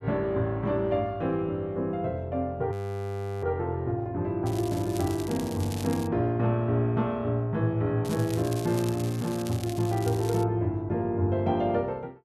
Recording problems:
audio freezing; at 2.5 s for 0.5 s
crackle; from 4.5 to 6 s and from 8 to 10 s; loose cable, SNR 15 dB

